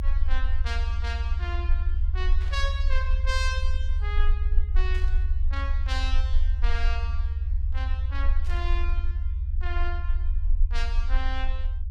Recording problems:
rumble; below 58 Hz, strongest tone 22 Hz, SNR -8 dB
burst of static; at 2.5 s, at 5 s and at 8.5 s; peak -8 dB vs average level

